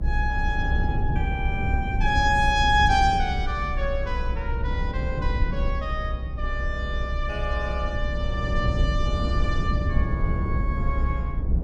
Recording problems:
low-frequency rumble; below 90 Hz, SNR 0 dB

